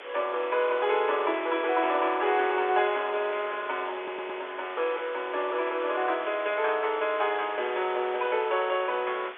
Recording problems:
telephone audio; 340 Hz to 3.6 kHz, G.711
hiss; SNR 15 dB
wind noise; below 980 Hz, SNR 22 dB
stutter; at 4 s

